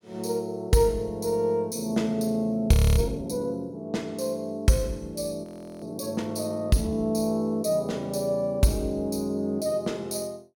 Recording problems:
frozen audio; at 2.5 s and at 5.5 s

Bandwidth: 17.5 kHz